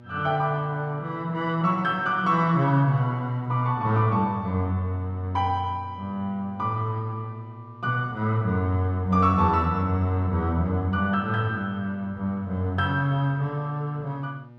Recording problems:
hum; 60 Hz, harmonics up to 1.2 kHz, SNR 22 dB

